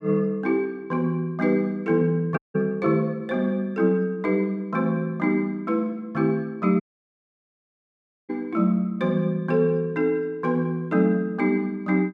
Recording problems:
dropout; at 2.5 s and at 7 s for 1.5 s

